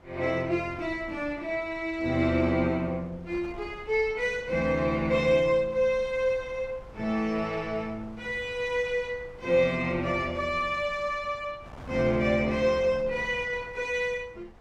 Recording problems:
wind noise; below 660 Hz, SNR 21 dB

